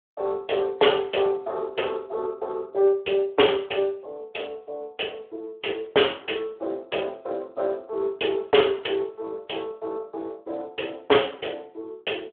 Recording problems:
telephone audio; 320 Hz to 3.4 kHz, Speex

